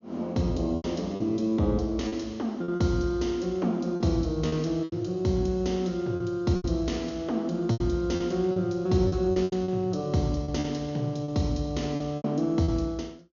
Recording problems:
treble missing; nothing above 6.9 kHz
packet loss; 9% of the sound replaced, filled with repeated pitch periods

